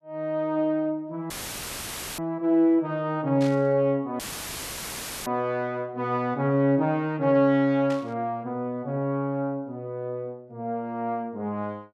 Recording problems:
dropout; at 1.5 s for 1 s and at 4 s for 1 s; filled with static
static burst; at 3.5 s and at 8 s; peak -10 dB vs average level

